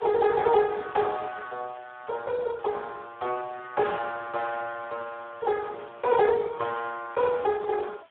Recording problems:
telephone audio; 370 Hz to 2.1 kHz, Speex
background hiss; SNR 27 dB

